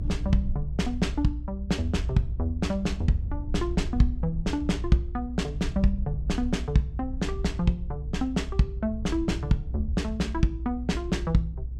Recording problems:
rumble; below 64 Hz, strongest tone 62 Hz, SNR 5 dB

